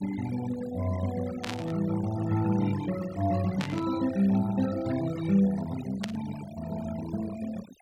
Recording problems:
noise reduction artefacts; signal-to-artefact ratio 15 dB
burst of static; at 1.5 s, at 3.5 s and at 6 s; peak -2 dB vs average level

